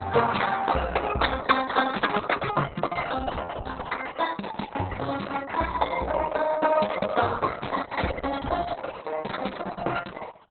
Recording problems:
codec artefacts; Opus, then Opus, log-spectral distance 6 dB, nothing above 4 kHz

